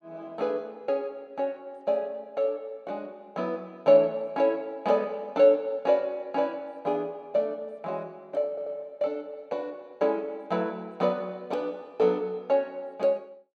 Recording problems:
stutter; at 8.5 s

